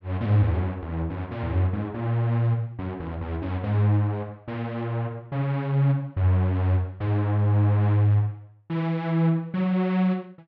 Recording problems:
none

